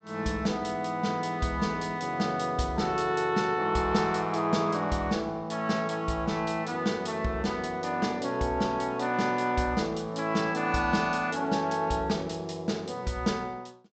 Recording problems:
treble missing; nothing above 8 kHz

